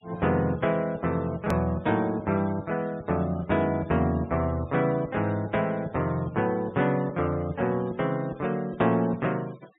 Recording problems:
low-pass filter; nothing above 4 kHz
noise reduction artefacts; signal-to-artefact ratio 25 dB
hard cut with a click; at 1.5 s

